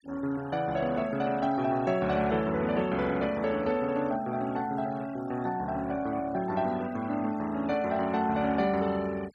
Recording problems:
noise reduction artefacts; signal-to-artefact ratio 20 dB

